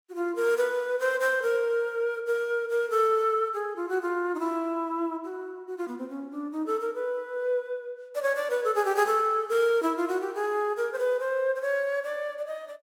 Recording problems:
none

